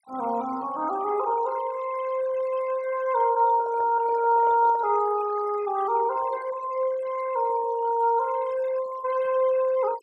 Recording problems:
denoising artefacts; signal-to-artefact ratio 18 dB
microphone handling noise; from 3.5 to 5 s; peak -10 dB vs average level

